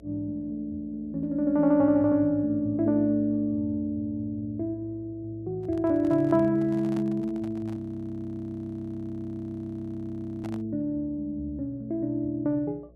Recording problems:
electrical hum; 60 Hz, harmonics up to 660 Hz, SNR 26 dB
microphone handling noise; from 5.5 to 11 s; peak -9 dB vs average level
frozen audio; at 8 s for 2.5 s

